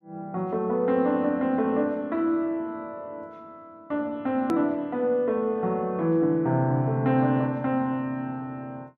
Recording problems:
click at an edit; at 4.5 s

